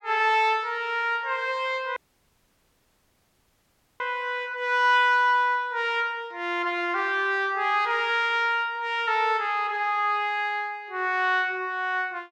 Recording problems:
dropout; at 2 s for 2 s

